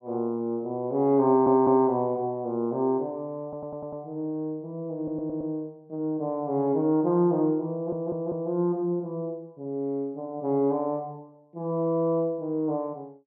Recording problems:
audio stuttering; 4 times, first at 1.5 s

